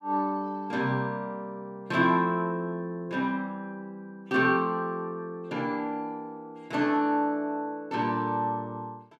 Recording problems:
none

